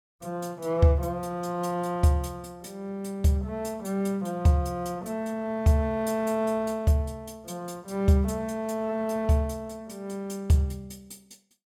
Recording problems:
none

